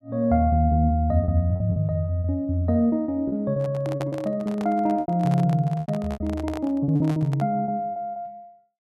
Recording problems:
packet loss; 10% of the sound replaced, filled with repeated pitch periods
handling noise; from 3.5 to 7.5 s; peak -6 dB vs average level

